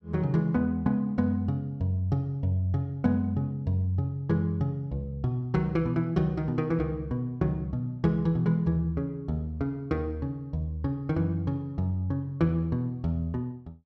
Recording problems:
none

